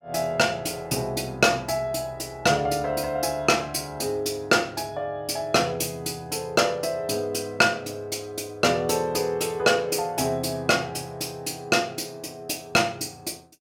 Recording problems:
none

